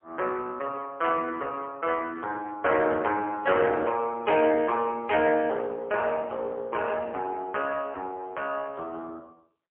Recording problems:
phone line; 280 Hz to 3.3 kHz, AMR-NB, then MP3

